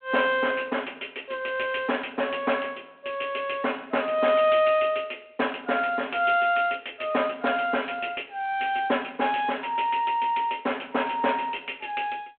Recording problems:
phone line; 260 Hz to 3.6 kHz, G.726

